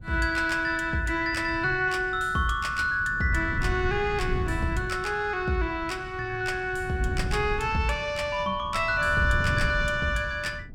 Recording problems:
wind noise; below 140 Hz, SNR 10 dB

